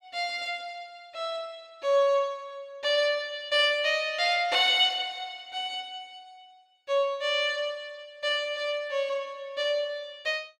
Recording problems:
none

